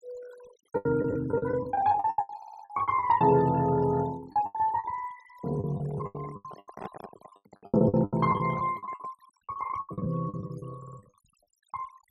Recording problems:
noise reduction artefacts; signal-to-artefact ratio 22 dB
packet loss; 20% of the sound replaced, filled with the last packet
audio stuttering; at 2.5 s and at 11 s
handling noise; from 5.5 to 9 s; peak -6 dB vs average level

